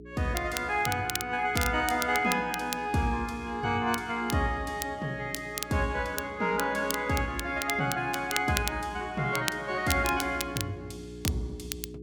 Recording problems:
electrical hum; 60 Hz, harmonics up to 420 Hz, SNR 17 dB
crackling; vinyl, SNR 8 dB

